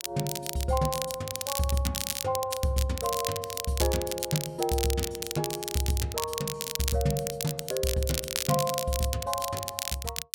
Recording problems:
crackle; vinyl, SNR 3 dB

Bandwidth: 16.5 kHz